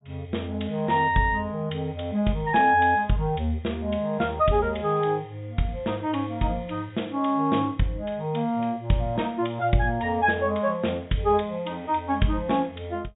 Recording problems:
treble missing; nothing above 4 kHz

